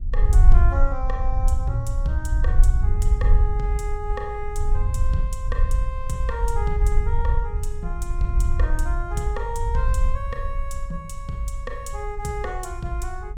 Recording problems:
rumble; below 58 Hz, strongest tone 20 Hz, SNR -6 dB

